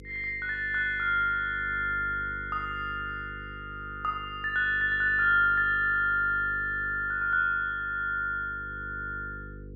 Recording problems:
mains hum; 50 Hz, harmonics up to 500 Hz, SNR 18 dB

